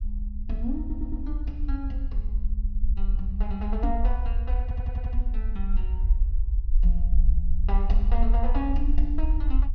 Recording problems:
treble missing; nothing above 6.3 kHz
rumble; below 50 Hz, SNR -8 dB
stutter; at 1 s and at 4.5 s
knock on the microphone; at 4 s; peak +9 dB vs average level

